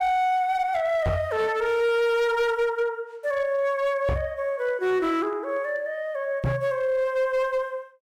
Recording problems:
distortion; hard clipping, uneven, signal-to-distortion ratio 11 dB
microphone thump; at 1 s, at 4 s and at 6.5 s; peak +3 dB vs average level

